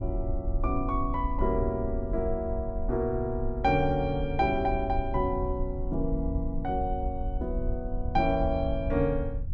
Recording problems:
rumble; below 72 Hz, SNR 5 dB

